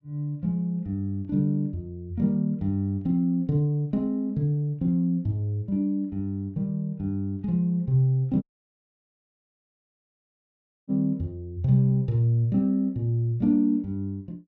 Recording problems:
dropout; at 8.5 s for 2.5 s

